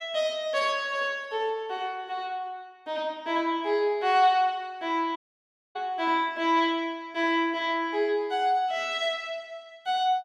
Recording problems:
dropout; at 5 s for 0.5 s

